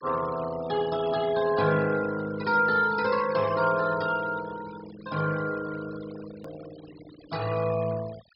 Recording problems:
low-pass filter; nothing above 5.5 kHz
denoising artefacts; signal-to-artefact ratio 17 dB
hard cut with a click; at 6.5 s

